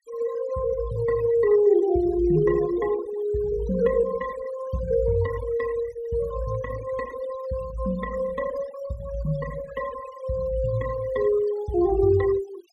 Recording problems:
denoising artefacts; signal-to-artefact ratio 17 dB

